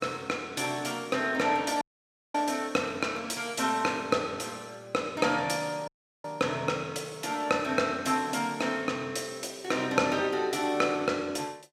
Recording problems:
dropout; at 2 s for 0.5 s and at 6 s

